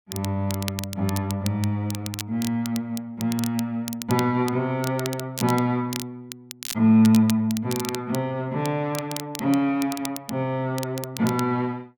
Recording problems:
crackling; vinyl, SNR 12 dB

